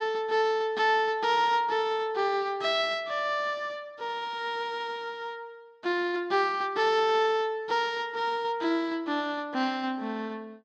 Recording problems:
none

